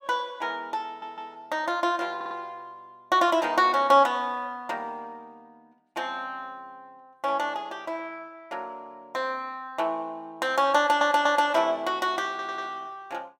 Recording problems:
stutter; 4 times, first at 1 s

